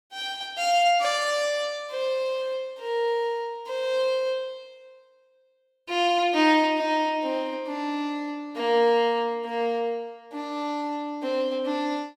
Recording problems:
none

